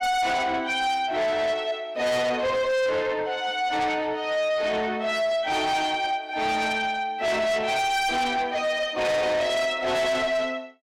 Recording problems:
distorted audio; soft clipping, signal-to-distortion ratio 6 dB

